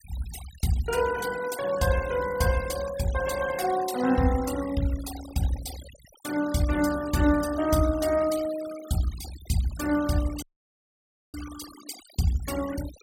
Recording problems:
noise reduction artefacts; signal-to-artefact ratio 14 dB
dropout; at 10 s for 1 s

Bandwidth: 16.5 kHz